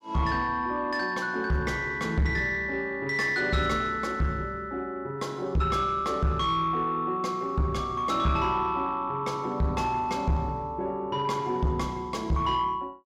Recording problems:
distorted audio; soft clipping, signal-to-distortion ratio 11 dB

